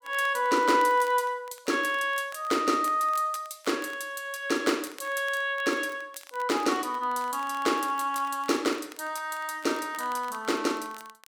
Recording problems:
crackle; vinyl, SNR 24 dB

